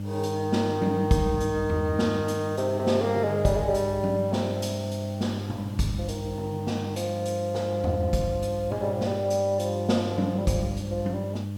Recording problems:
mains hum; 50 Hz, harmonics up to 600 Hz, SNR 6 dB
background hiss; slope -1 dB per octave, SNR 25 dB

